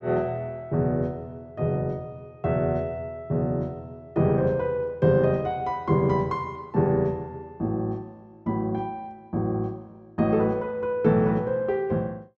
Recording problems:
treble missing; nothing above 8 kHz

